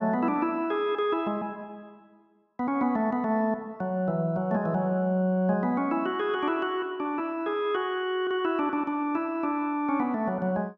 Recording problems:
none

